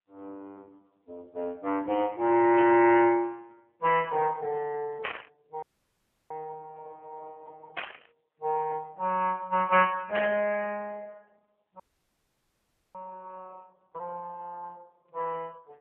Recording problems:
telephone audio; 300 Hz to 3.1 kHz, AMR-NB
burst of static; 4 times, first at 2.5 s; peak -2 dB vs average level
dropout; at 5.5 s for 0.5 s and at 12 s for 1 s

